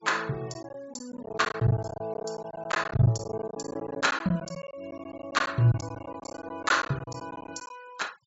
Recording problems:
treble cut off; nothing above 8 kHz
denoising artefacts; signal-to-artefact ratio 25 dB
packet loss; 15% of the sound replaced, filled with silence

